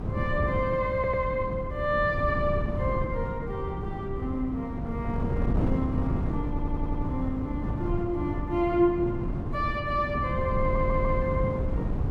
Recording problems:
wind on the microphone; below 200 Hz, SNR 2 dB
stutter; at 1 s, at 6.5 s and at 11 s

